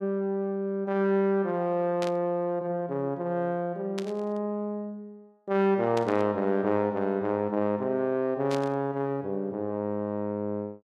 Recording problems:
burst of static; 4 times, first at 2 s; peak -5 dB vs average level

